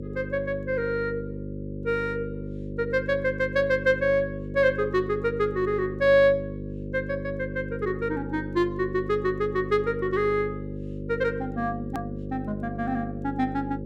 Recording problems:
electrical hum; 50 Hz, harmonics up to 550 Hz, SNR 8 dB
hard cut with a click; at 12 s

